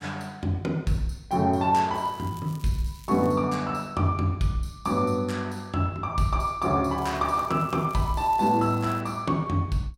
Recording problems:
crackling; from 2 to 3.5 s and from 7 to 9 s; loose cable, SNR 25 dB

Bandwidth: 16 kHz